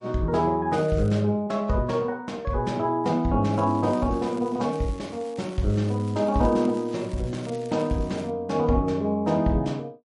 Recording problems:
lossy codec; MP3, log-spectral distance 2 dB, nothing above 10.4 kHz
crackle; at 0.5 s and from 3.5 to 8.5 s; loose cable, SNR 24 dB

